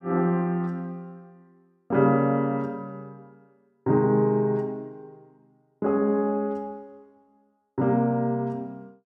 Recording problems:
none

